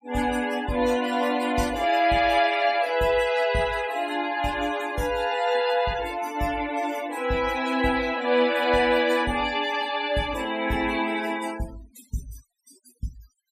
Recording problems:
noise reduction artefacts; signal-to-artefact ratio 17 dB

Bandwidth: 15.5 kHz